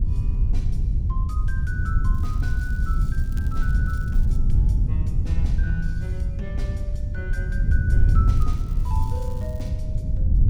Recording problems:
wind noise; below 86 Hz, SNR -13 dB
crackle; from 2 to 4 s, at 4 s and from 8.5 to 9.5 s; loose cable, SNR 16 dB

